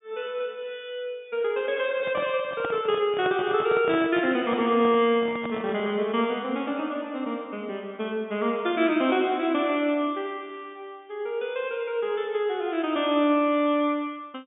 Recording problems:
low-pass filter; nothing above 3.6 kHz
microphone handling noise; from 2 to 6 s; peak -4 dB vs average level

